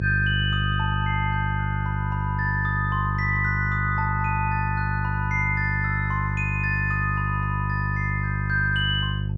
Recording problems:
hum; 50 Hz, harmonics up to 400 Hz, SNR 1 dB

